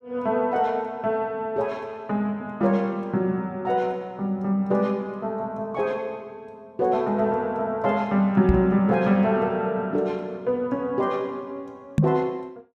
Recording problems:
knock on the microphone; at 8.5 s and at 12 s; peak +8 dB vs average level

